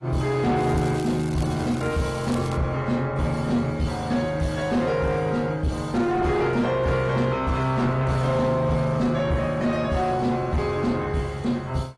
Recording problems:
lossy codec; AAC, log-spectral distance 2 dB
distorted audio; soft clipping, signal-to-distortion ratio 10 dB
crackling; from 0.5 to 2.5 s; loose cable, SNR 19 dB

